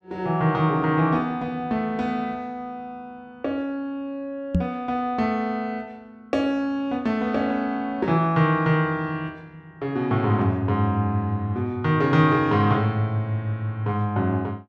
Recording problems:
knock on the microphone; at 4.5 s; peak +5 dB vs average level

